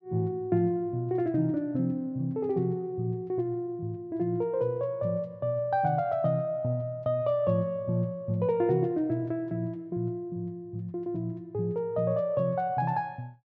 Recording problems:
none

